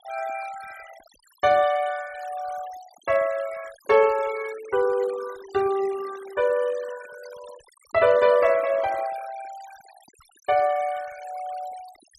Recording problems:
denoising artefacts; signal-to-artefact ratio 20 dB

